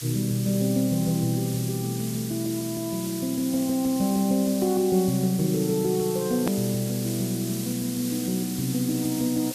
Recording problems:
hum; 60 Hz, harmonics up to 1.5 kHz, SNR 29 dB
hiss; slope +3 dB per octave, SNR 9 dB
edit click; at 6.5 s

